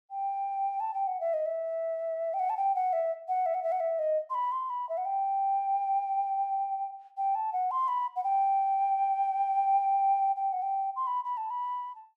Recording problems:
none

